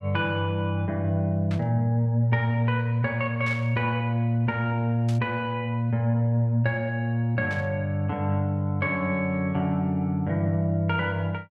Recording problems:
burst of static; 4 times, first at 1.5 s; peak -10 dB vs average level

